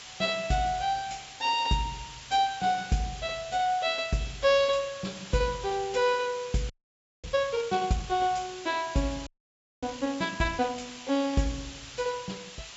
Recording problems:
low-pass filter; nothing above 8 kHz
background hiss; slope +2 dB per octave, SNR 14 dB
frozen audio; at 6.5 s for 0.5 s and at 9.5 s for 0.5 s

